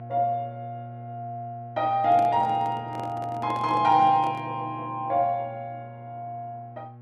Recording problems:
electrical hum; 60 Hz, harmonics up to 1.1 kHz, SNR 17 dB
handling noise; from 2 to 4.5 s; peak -8 dB vs average level

